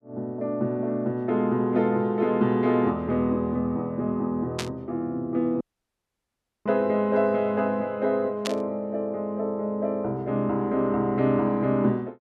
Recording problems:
burst of static; at 4.5 s and at 8.5 s; peak 0 dB vs average level
audio cutting out; at 5.5 s for 1 s

